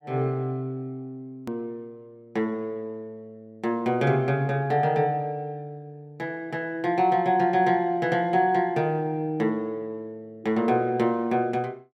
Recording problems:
click at an edit; at 1.5 s

